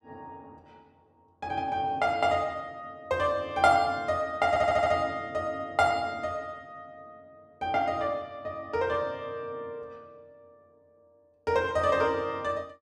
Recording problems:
stutter; at 4.5 s

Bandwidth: 12.5 kHz